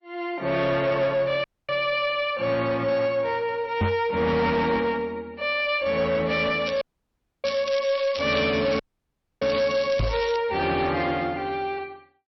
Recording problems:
lossy codec; MP3, log-spectral distance 4 dB, nothing above 5.7 kHz
distortion; soft clipping, signal-to-distortion ratio 12 dB
audio cutting out; at 1.5 s, at 7 s for 0.5 s and at 9 s for 0.5 s
microphone bump; at 4 s and at 10 s; peak +4 dB vs average level
crackling; from 6.5 to 10 s; loose cable, SNR 12 dB

